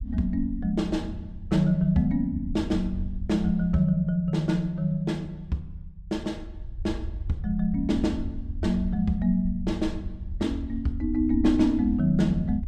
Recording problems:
rumble; below 82 Hz, SNR 11 dB

